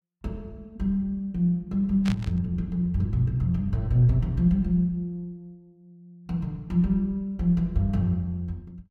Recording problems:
static burst; at 2 s; peak -6 dB vs average level

